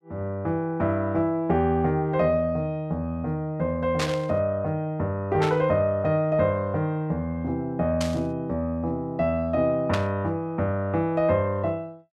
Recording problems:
static burst; 4 times, first at 4 s; peak 0 dB vs average level

